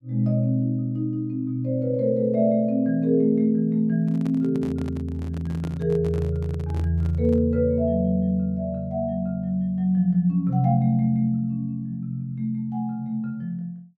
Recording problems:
handling noise; from 4 to 7.5 s; peak -7 dB vs average level

